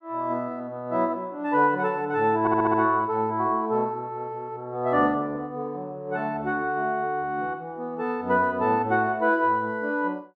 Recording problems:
audio stuttering; at 2.5 s

